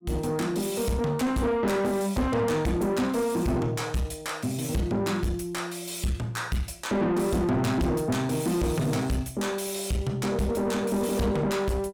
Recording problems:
distortion; soft clipping, signal-to-distortion ratio 7 dB

